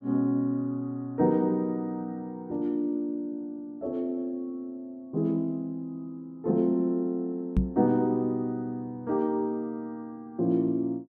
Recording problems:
knock on the microphone; at 7.5 s; peak +8 dB vs average level

